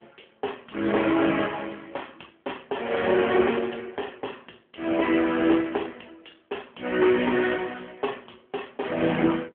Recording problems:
telephone audio; 260 Hz to 3.3 kHz, AMR-NB

